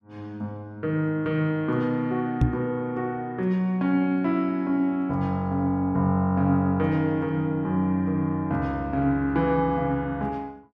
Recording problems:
knock on the microphone; at 2.5 s; peak +8 dB vs average level

